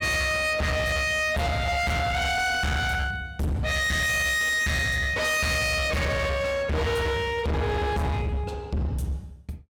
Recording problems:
distorted audio; hard clipping, uneven, signal-to-distortion ratio 6 dB

